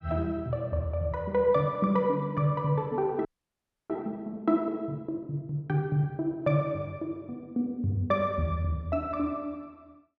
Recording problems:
audio freezing; at 3.5 s for 0.5 s

